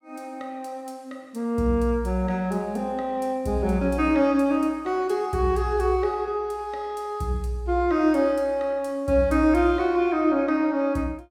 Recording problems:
none

